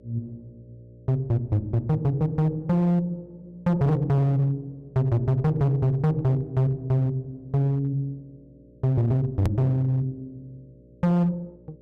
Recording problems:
distorted audio; hard clipping, signal-to-distortion ratio 11 dB
hum; 60 Hz, harmonics up to 600 Hz, SNR 29 dB
click at an edit; at 9.5 s

